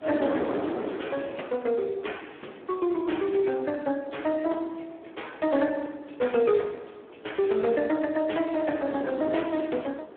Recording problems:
phone line; 240 Hz to 3.4 kHz, Speex
wind on the microphone; below 660 Hz, SNR 8 dB

